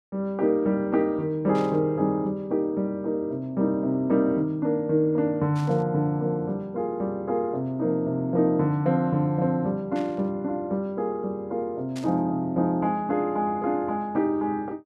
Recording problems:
static burst; 4 times, first at 1.5 s; peak -11 dB vs average level

